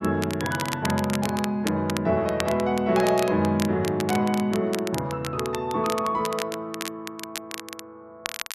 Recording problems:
crackling; vinyl, SNR 11 dB

